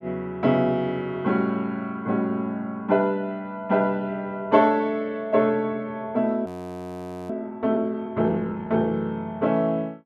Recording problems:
audio freezing; at 6.5 s for 1 s

